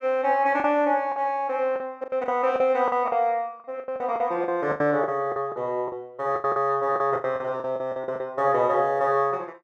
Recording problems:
lost packets; 14% of the sound replaced, filled with the last packet

